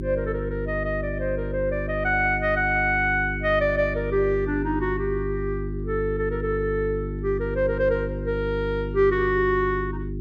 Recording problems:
electrical hum; 50 Hz, harmonics up to 400 Hz, SNR 6 dB

